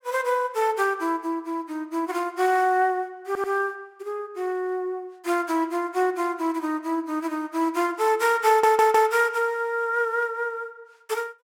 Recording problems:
stutter; at 3.5 s and at 8.5 s

